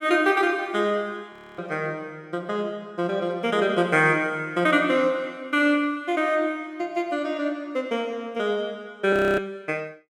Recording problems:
frozen audio; at 1.5 s and at 9 s

